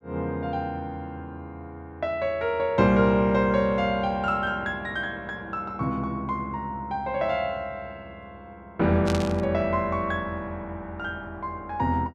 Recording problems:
burst of static; at 9 s; peak -2 dB vs average level

